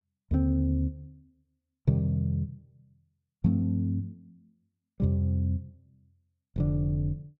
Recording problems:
none

